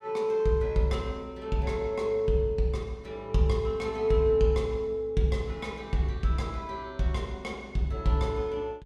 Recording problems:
none

